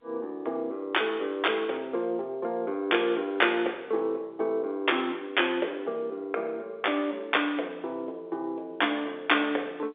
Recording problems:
phone line; 300 Hz to 3.6 kHz, G.711

